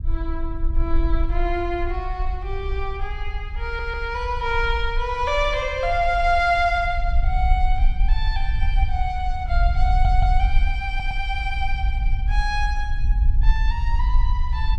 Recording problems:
rumble; below 54 Hz, SNR 0 dB
stutter; at 3.5 s, at 10 s and at 11 s

